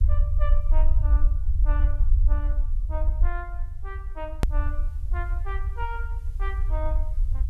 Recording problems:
hiss; SNR 27 dB
rumble; below 56 Hz, SNR -12 dB
edit click; at 4.5 s

